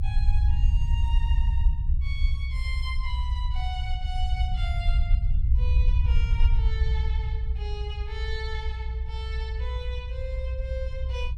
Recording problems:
rumble; below 66 Hz, SNR -12 dB

